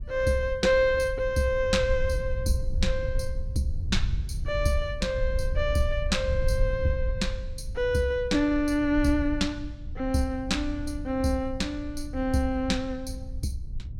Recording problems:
wind on the microphone; below 72 Hz, SNR 6 dB

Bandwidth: 16.5 kHz